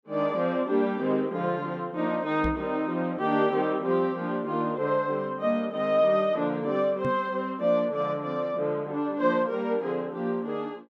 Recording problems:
knock on the microphone; at 2.5 s and at 7 s; peak -1 dB vs average level

